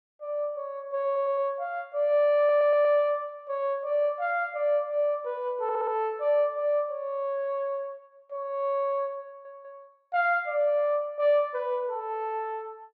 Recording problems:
stutter; 4 times, first at 1 s

